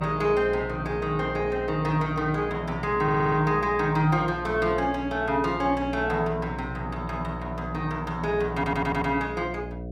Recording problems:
electrical hum; 60 Hz, harmonics up to 720 Hz, SNR 11 dB
stutter; at 3 s and at 8.5 s

